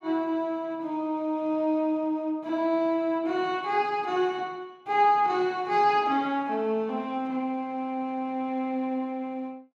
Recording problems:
none

